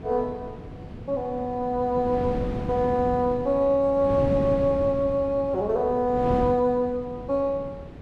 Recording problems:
wind noise; below 310 Hz, SNR 10 dB

